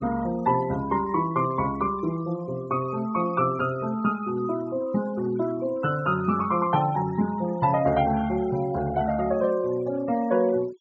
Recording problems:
treble cut off; nothing above 8 kHz
denoising artefacts; signal-to-artefact ratio 20 dB

